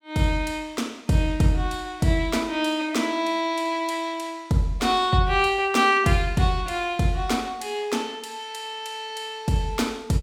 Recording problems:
none

